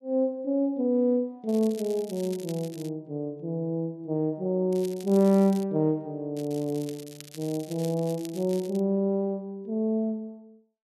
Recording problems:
crackling; 4 times, first at 1.5 s; loose cable, SNR 19 dB

